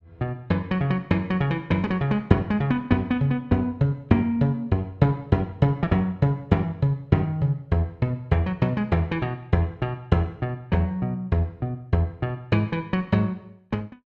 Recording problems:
none

